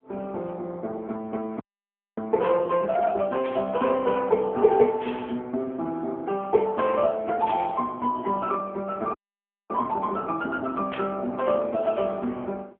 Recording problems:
phone line; 190 Hz to 3.6 kHz, AMR-NB
audio freezing; at 1.5 s for 0.5 s and at 9 s for 0.5 s
burst of static; 5 times, first at 2.5 s; peak -6 dB vs average level

